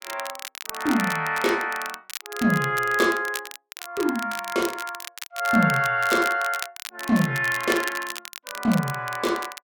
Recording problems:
crackle; vinyl, SNR 12 dB

